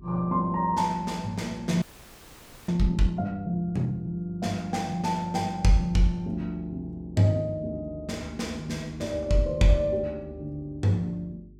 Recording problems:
electrical hum; 50 Hz, harmonics up to 400 Hz, SNR 23 dB
frozen audio; at 2 s for 1 s

